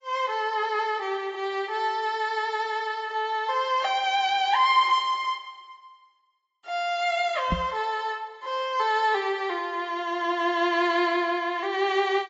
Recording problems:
lossy codec; AAC, log-spectral distance 2 dB, nothing above 7.3 kHz
microphone thump; at 7.5 s; peak +2 dB vs average level

